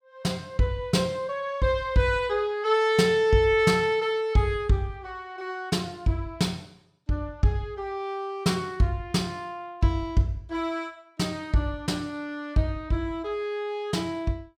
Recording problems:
none

